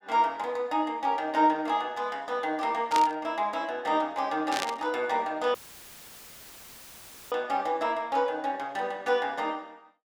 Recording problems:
static burst; at 3 s and at 4.5 s; peak +1 dB vs average level
audio cutting out; at 5.5 s for 2 s; filled with static

